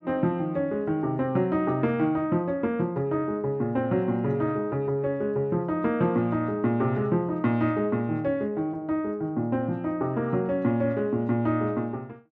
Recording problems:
none

